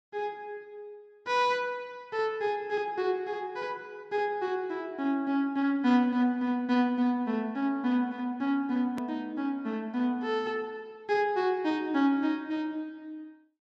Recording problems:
edit click; at 9 s

